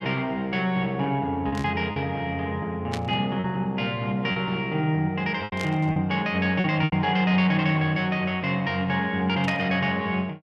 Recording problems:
packet loss; 4% of the sound replaced, filled with repeated pitch periods
static burst; 4 times, first at 1.5 s; peak -4 dB vs average level

